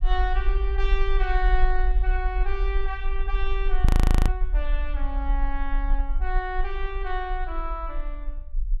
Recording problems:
rumble; below 46 Hz, SNR -5 dB
audio freezing; at 4 s

